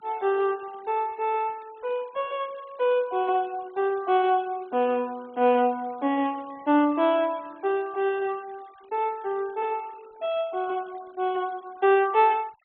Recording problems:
treble missing; nothing above 4 kHz
denoising artefacts; signal-to-artefact ratio 28 dB

